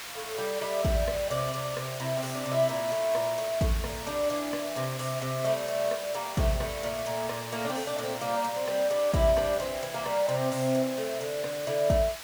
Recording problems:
hiss; SNR 9 dB

